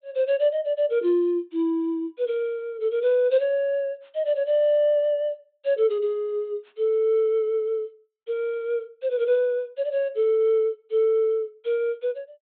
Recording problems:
low-pass filter; nothing above 4 kHz

